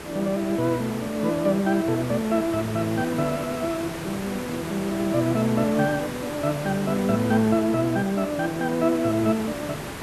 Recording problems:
background hiss; slope -5 dB per octave, SNR 10 dB

